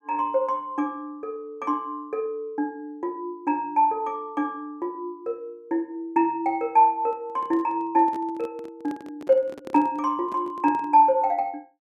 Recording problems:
microphone handling noise; from 7 to 11 s; peak -9 dB vs average level

